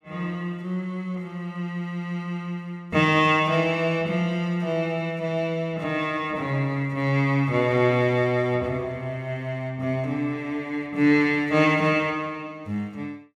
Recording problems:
none

